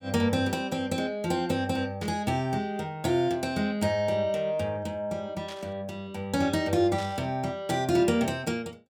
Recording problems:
burst of static; at 2 s, at 5.5 s and at 7 s; peak -10 dB vs average level

